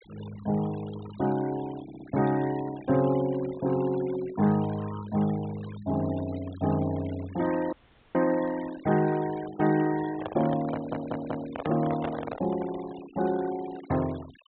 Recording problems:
low-pass filter; nothing above 4 kHz
noise reduction artefacts; signal-to-artefact ratio 17 dB
stutter; at 2 s and at 11 s
dropout; at 7.5 s
handling noise; from 10 to 13 s; peak -1 dB vs average level

